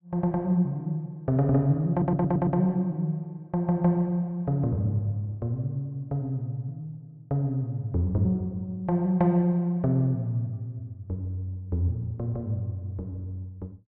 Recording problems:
stutter; at 2 s

